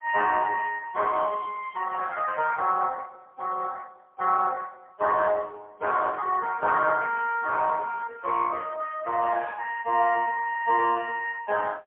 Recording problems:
phone line; 260 Hz to 3.1 kHz, AMR-NB, then MP3

